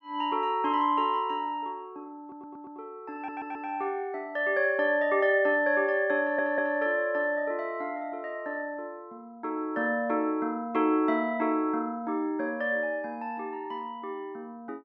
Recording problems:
audio stuttering; at 2 s, at 3 s and at 6 s

